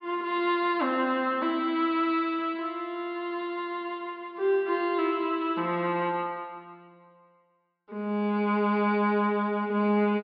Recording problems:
treble cut off; nothing above 5.5 kHz

